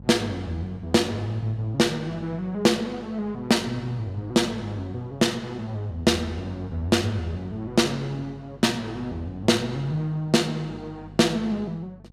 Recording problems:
electrical hum; 50 Hz, harmonics up to 550 Hz, SNR 19 dB

